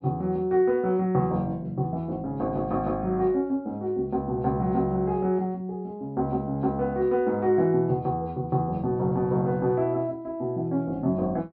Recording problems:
treble missing; nothing above 5.5 kHz

